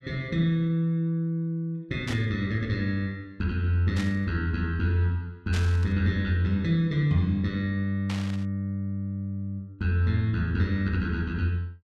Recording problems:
static burst; 4 times, first at 2 s; peak -5 dB vs average level

